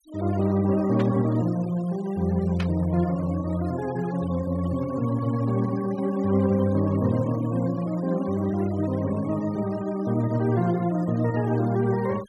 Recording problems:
denoising artefacts; signal-to-artefact ratio 21 dB
burst of static; at 1 s and at 2.5 s; peak -6 dB vs average level

